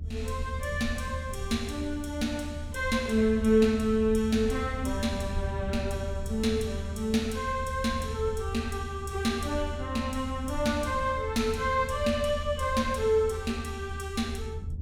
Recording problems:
low-frequency rumble; below 82 Hz, strongest tone 78 Hz, SNR 8 dB

